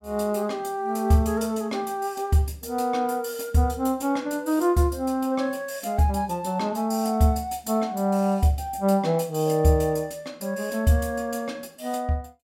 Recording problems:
none

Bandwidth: 16.5 kHz